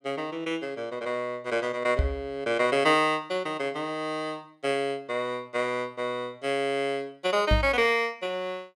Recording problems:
knock on the microphone; at 2 s and at 7.5 s; peak +6 dB vs average level

